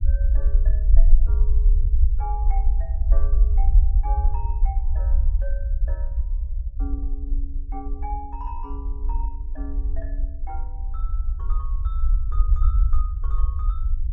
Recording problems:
low-frequency rumble; below 54 Hz, SNR -16 dB

